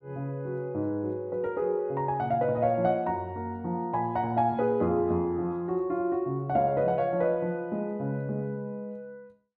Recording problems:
none

